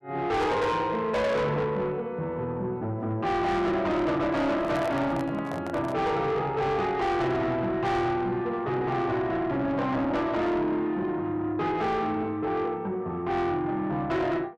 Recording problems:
distortion; soft clipping, signal-to-distortion ratio 8 dB
handling noise; from 4.5 to 6 s; peak -2 dB vs average level

